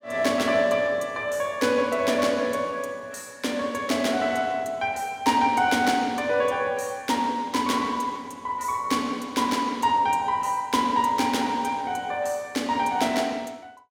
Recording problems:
none

